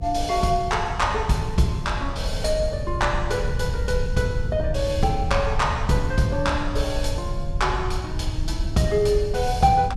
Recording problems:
electrical hum; 50 Hz, harmonics up to 550 Hz, SNR 17 dB
rumble; below 94 Hz, SNR 5 dB

